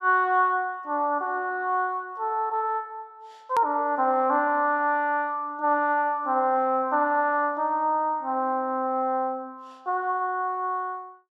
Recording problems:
hard cut with a click; at 3.5 s

